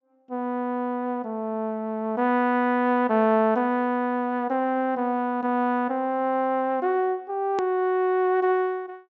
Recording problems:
treble cut off; nothing above 8 kHz
hard cut with a click; at 7.5 s

